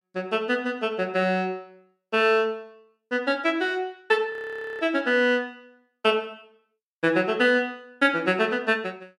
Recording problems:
frozen audio; at 4.5 s

